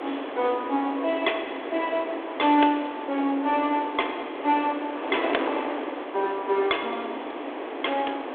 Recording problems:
telephone audio; 240 Hz to 3.5 kHz, G.726
wind on the microphone; below 1.1 kHz, SNR 6 dB

